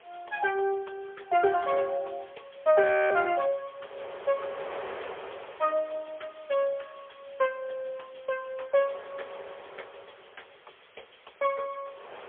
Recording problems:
phone line; 340 Hz to 3.3 kHz, AMR-NB, then MP3
background hiss; SNR 27 dB
wind noise; below 1.3 kHz, SNR 14 dB
audio freezing; at 3 s

